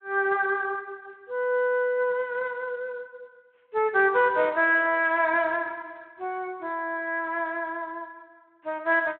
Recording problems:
phone line; 340 Hz to 3.9 kHz, Speex

